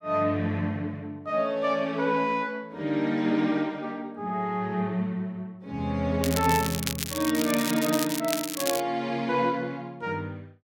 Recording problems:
crackle; from 6 to 9 s; loose cable, SNR 4 dB

